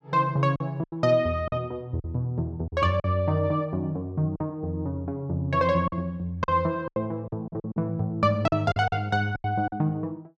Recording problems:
lost packets; 9% of the sound replaced, filled with silence

